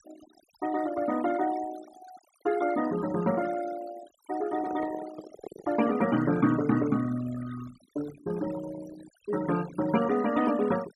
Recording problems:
noise reduction artefacts; signal-to-artefact ratio 14 dB
microphone handling noise; from 4.5 to 6 s; peak -7 dB vs average level

